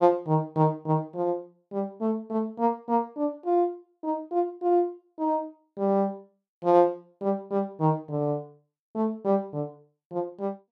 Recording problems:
none

